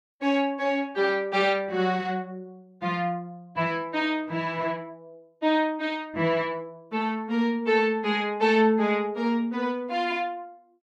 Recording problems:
none

